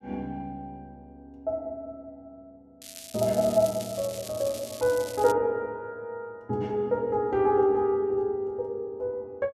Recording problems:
crackling; from 3 to 5.5 s; loose cable, SNR 13 dB

